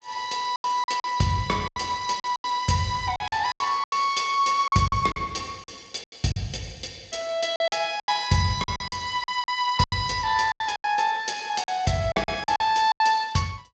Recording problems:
lossy codec; Speex, log-spectral distance 5 dB
lost packets; 13% of the sound replaced, filled with silence

